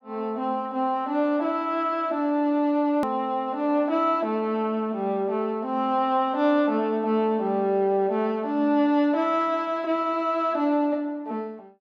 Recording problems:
hard cut with a click; at 3 s

